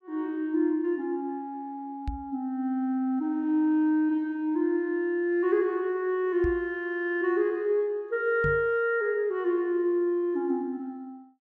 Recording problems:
microphone thump; at 2 s, at 6.5 s and at 8.5 s; peak -2 dB vs average level

